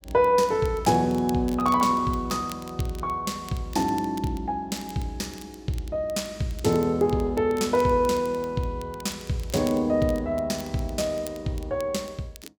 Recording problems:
crackling; vinyl, SNR 21 dB

